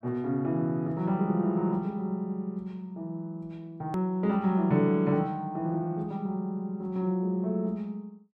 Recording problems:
edit click; at 4 s

